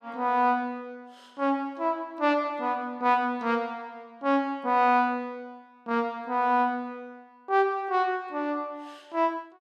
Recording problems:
none

